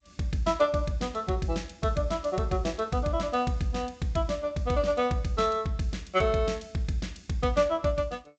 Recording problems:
codec artefacts; G.722, log-spectral distance 2 dB, nothing above 7.6 kHz

